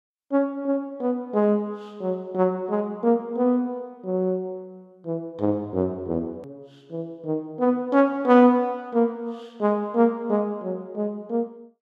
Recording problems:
click at an edit; at 6.5 s

